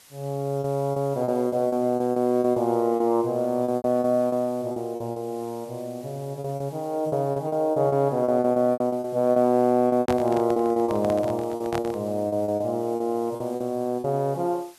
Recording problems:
background hiss; slope 0 dB per octave, SNR 26 dB
packet loss; 13% of the sound replaced, filled with repeated pitch periods
microphone handling noise; from 10 to 12 s; peak -1 dB vs average level

